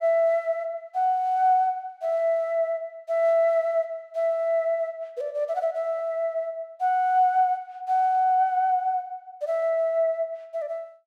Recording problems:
none

